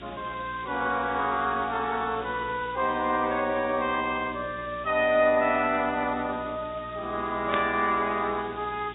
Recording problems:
low-pass filter; nothing above 3.8 kHz
codec artefacts; AAC, log-spectral distance 13 dB
hum; 60 Hz, harmonics up to 420 Hz, SNR 21 dB
background hiss; SNR 19 dB
burst of static; at 7.5 s; peak 0 dB vs average level

